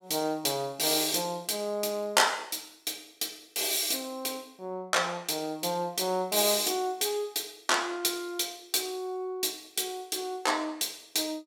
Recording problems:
none

